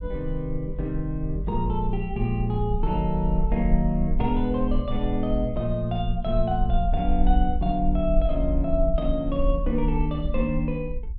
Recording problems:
rumble; below 50 Hz, SNR 3 dB

